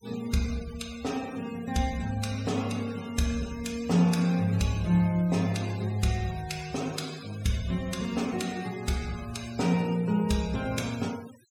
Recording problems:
noise reduction artefacts; signal-to-artefact ratio 17 dB

